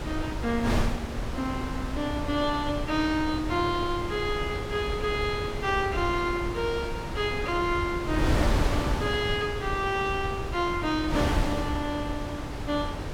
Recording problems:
wind noise; below 520 Hz, SNR 3 dB

